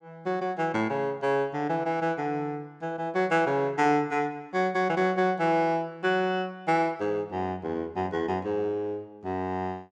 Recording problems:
none

